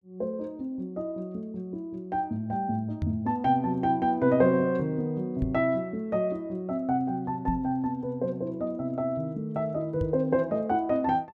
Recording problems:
knock on the microphone; 4 times, first at 3 s; peak +2 dB vs average level

